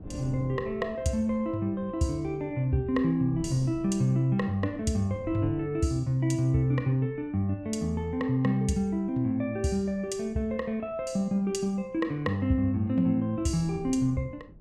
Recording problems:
wind on the microphone; below 240 Hz, SNR 20 dB

